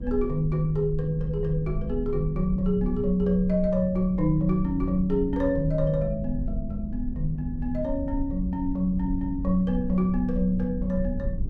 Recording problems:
rumble; below 82 Hz, SNR 8 dB

